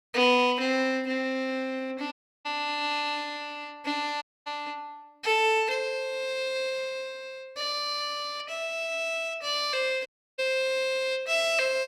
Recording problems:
audio cutting out; at 2 s, at 4 s and at 10 s

